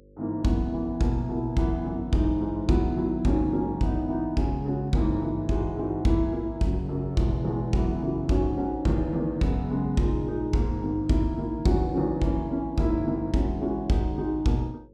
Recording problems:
electrical hum; 50 Hz, harmonics up to 550 Hz, SNR 29 dB

